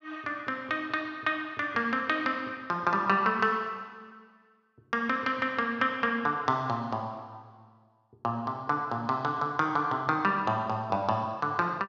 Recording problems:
none

